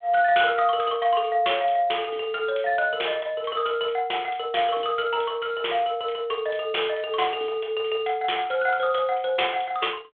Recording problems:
phone line; 300 Hz to 3.5 kHz, G.726

